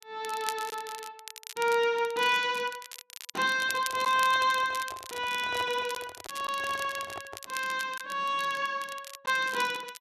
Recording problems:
crackling; vinyl, SNR 13 dB
lost packets; 1% of the sound replaced, filled with silence
handling noise; from 3.5 to 7.5 s; peak -8 dB vs average level

